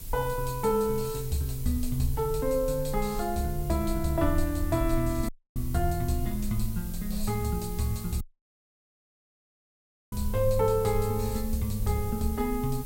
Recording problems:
background hiss; slope +5 dB per octave, SNR 14 dB
low-frequency rumble; below 50 Hz, strongest tone 20 Hz, SNR 9 dB
audio cutting out; at 5.5 s and at 8 s for 2 s

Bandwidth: 16 kHz